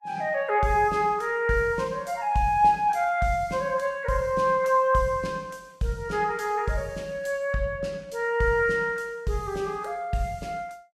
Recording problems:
lossy compression; Vorbis, log-spectral distance 2 dB, nothing above 13.8 kHz

